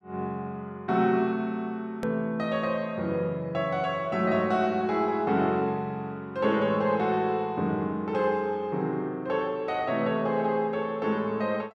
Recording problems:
click at an edit; at 2 s

